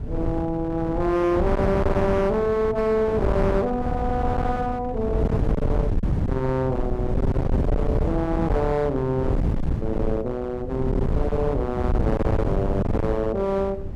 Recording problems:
distortion; hard clipping, uneven, signal-to-distortion ratio 6 dB
wind noise; below 200 Hz, SNR 2 dB

